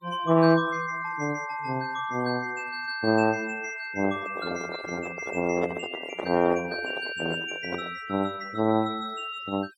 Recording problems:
noise reduction artefacts; signal-to-artefact ratio 18 dB
handling noise; from 4 to 8 s; peak 0 dB vs average level

